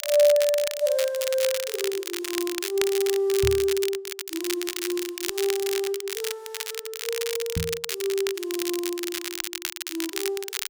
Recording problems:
crackling; vinyl, SNR 5 dB
microphone bump; at 3.5 s and at 7.5 s; peak +3 dB vs average level

